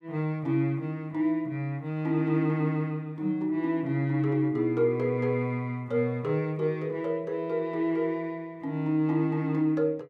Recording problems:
none

